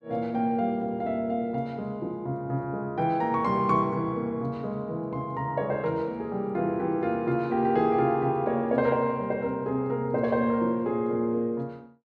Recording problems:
none

